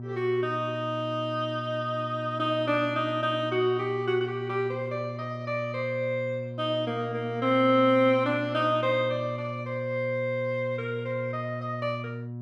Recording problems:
electrical hum; 60 Hz, harmonics up to 720 Hz, SNR 10 dB

